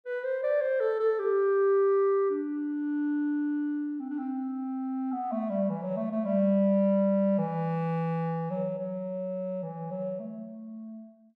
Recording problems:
none

